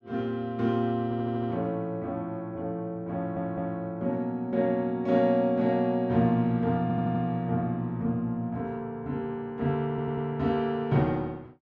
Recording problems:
stutter; 4 times, first at 1 s

